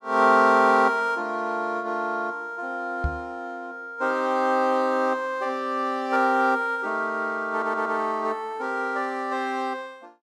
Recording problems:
knock on the microphone; at 3 s; peak 0 dB vs average level
stutter; at 7.5 s

